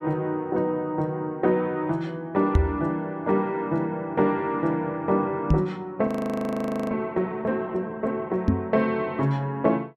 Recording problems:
knock on the microphone; at 2.5 s, at 5.5 s and at 8.5 s; peak +9 dB vs average level
audio freezing; at 6 s for 1 s

